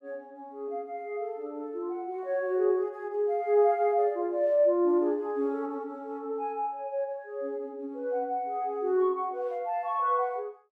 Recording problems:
none

